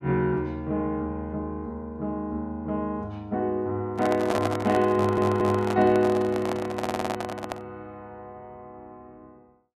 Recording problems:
handling noise; from 4 to 7.5 s; peak +2 dB vs average level
audio stuttering; at 5 s and at 7 s

